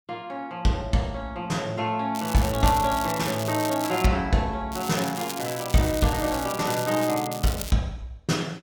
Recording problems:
crackling; from 2 to 4 s and from 4.5 to 7.5 s; loose cable, SNR 9 dB

